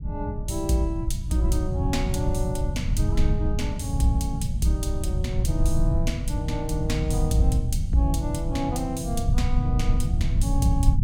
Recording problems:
rumble; below 110 Hz, SNR -2 dB

